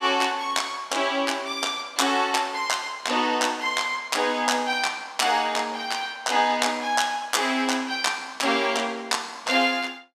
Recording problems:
none

